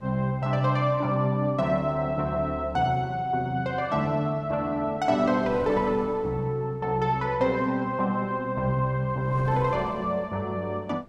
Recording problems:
wind noise; below 560 Hz, SNR 21 dB

